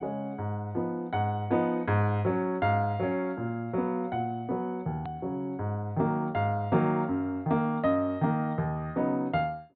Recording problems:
treble cut off; nothing above 4.3 kHz
edit click; at 5 s

